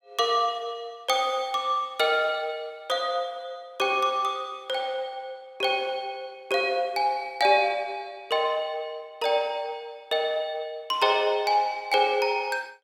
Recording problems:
none

